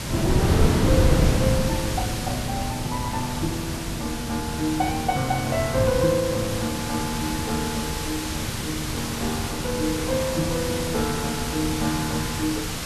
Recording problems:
hiss; slope -1 dB per octave, SNR 4 dB
wind noise; below 260 Hz, SNR 2 dB

